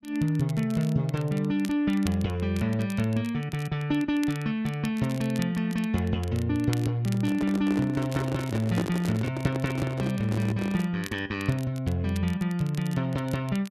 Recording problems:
crackle; vinyl, SNR 19 dB
handling noise; from 7 to 11 s; peak +2 dB vs average level

